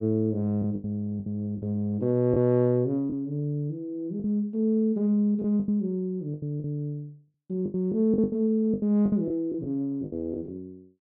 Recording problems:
lost packets; 10% of the sound replaced, filled with the last packet

